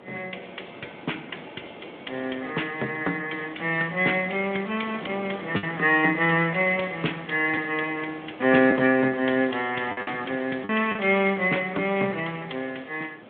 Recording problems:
phone line; 220 Hz to 3.5 kHz, Speex
background hiss; SNR 30 dB
wind on the microphone; below 780 Hz, SNR 20 dB
lost packets; 1.9% of the sound replaced, filled with the last packet

